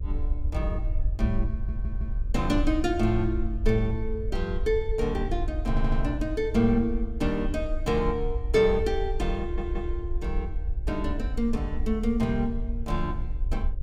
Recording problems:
hum; 50 Hz, harmonics up to 600 Hz, SNR 25 dB
rumble; below 60 Hz, SNR 4 dB
stutter; at 1.5 s, at 5.5 s and at 9.5 s

